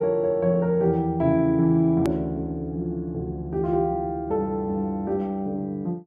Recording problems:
edit click; at 2 s

